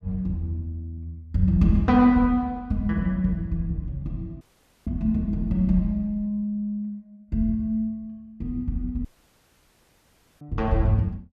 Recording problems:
dropout; at 4.5 s and at 9 s for 1.5 s

